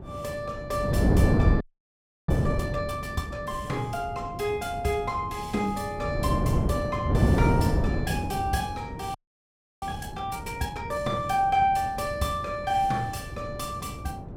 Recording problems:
wind noise; below 270 Hz, SNR 0 dB
audio freezing; at 1.5 s for 0.5 s and at 9 s for 0.5 s

